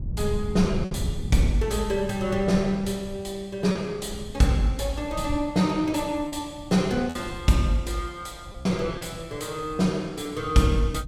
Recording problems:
wind on the microphone; below 130 Hz, SNR 11 dB
packet loss; 3% of the sound replaced, filled with repeated pitch periods

